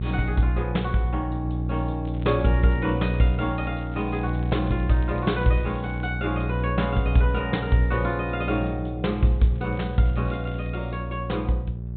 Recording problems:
treble missing; nothing above 4 kHz
mains hum; 60 Hz, harmonics up to 420 Hz, SNR 4 dB
crackle; from 2 to 6 s and from 9.5 to 11 s; loose cable, SNR 27 dB

